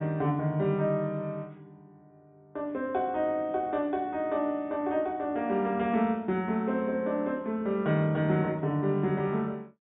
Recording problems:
low-pass filter; nothing above 4 kHz

